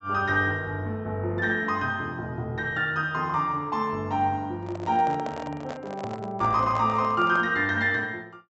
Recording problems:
low-pass filter; nothing above 7.8 kHz
handling noise; from 4.5 to 7.5 s; peak -6 dB vs average level

